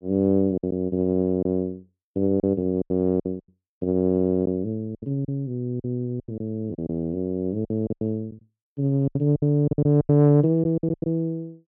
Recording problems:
lost packets; 12% of the sound replaced, filled with silence

